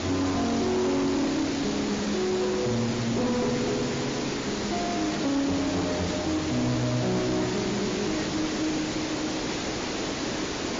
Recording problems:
lossy codec; MP3, then MP3, log-spectral distance 13 dB
distortion; hard clipping, uneven, signal-to-distortion ratio 10 dB
hiss; SNR 3 dB
burst of static; at 6 s and at 9.5 s; peak -8 dB vs average level

